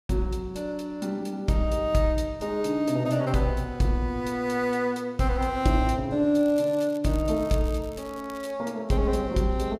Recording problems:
crackle; from 6.5 to 8.5 s; loose cable, SNR 23 dB

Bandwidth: 15 kHz